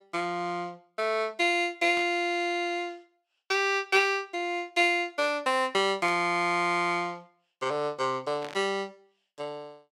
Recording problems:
burst of static; at 2 s, at 6 s and at 8.5 s; peak -10 dB vs average level

